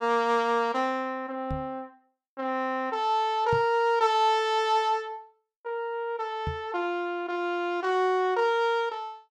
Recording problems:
knock on the microphone; at 1.5 s, at 3.5 s and at 6.5 s; peak -2 dB vs average level

